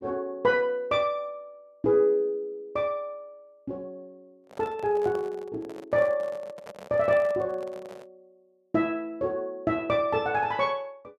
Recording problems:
microphone handling noise; from 4.5 to 8 s; peak -10 dB vs average level

